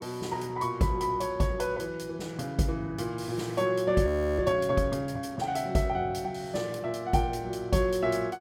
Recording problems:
frozen audio; at 4 s

